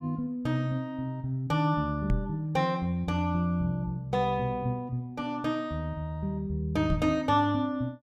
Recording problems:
microphone bump; at 2 s and at 7 s; peak +4 dB vs average level

